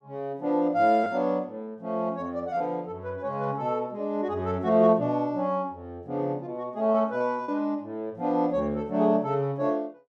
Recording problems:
packet loss; 1.2% of the sound replaced, filled with repeated pitch periods

